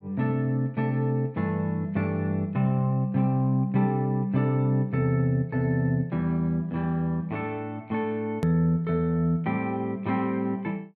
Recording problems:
edit click; at 8.5 s

